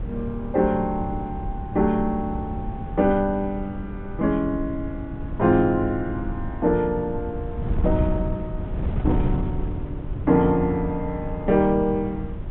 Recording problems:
low-pass filter; nothing above 3.7 kHz
wind noise; below 140 Hz, SNR 7 dB

